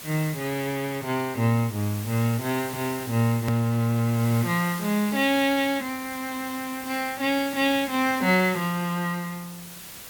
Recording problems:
hiss; slope -1 dB per octave, SNR 13 dB
click at an edit; at 3.5 s

